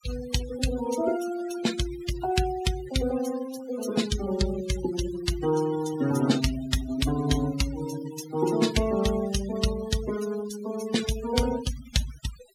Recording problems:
denoising artefacts; signal-to-artefact ratio 12 dB

